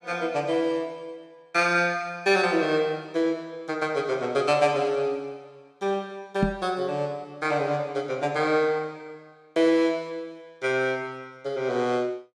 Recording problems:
microphone thump; at 6.5 s; peak +5 dB vs average level

